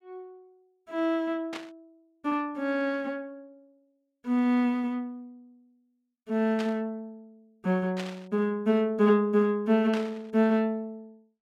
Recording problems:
burst of static; 4 times, first at 1.5 s; peak -6 dB vs average level

